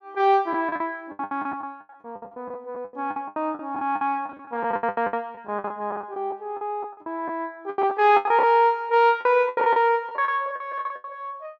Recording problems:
lost packets; 19% of the sound replaced, filled with the last packet

